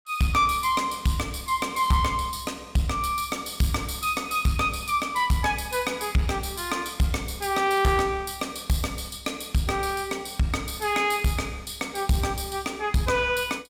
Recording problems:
distorted audio; soft clipping, signal-to-distortion ratio 11 dB

